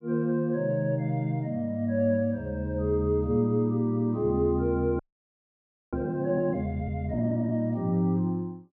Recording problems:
frozen audio; at 5 s for 1 s

